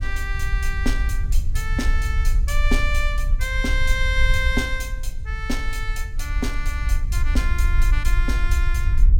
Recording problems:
rumble; below 56 Hz, strongest tone 22 Hz, SNR -3 dB

